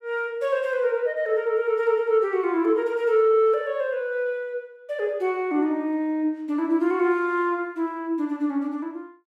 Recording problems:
none

